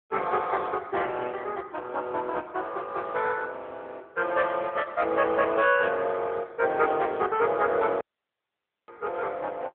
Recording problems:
telephone audio; 320 Hz to 3.3 kHz, AMR-NB
audio cutting out; at 8 s for 1 s

